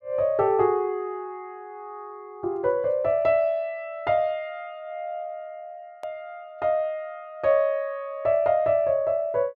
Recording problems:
hard cut with a click; at 6 s

